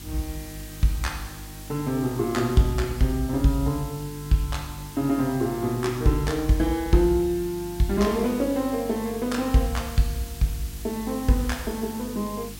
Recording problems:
hum; 50 Hz, harmonics up to 350 Hz, SNR 17 dB
hiss; slope +1 dB per octave, SNR 16 dB

